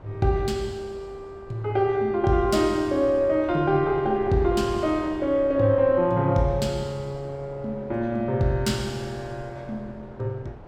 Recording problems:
wind on the microphone; below 640 Hz, SNR 18 dB

